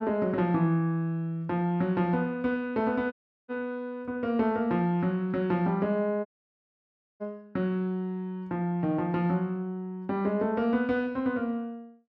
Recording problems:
dropout; at 3 s and at 6.5 s for 1 s

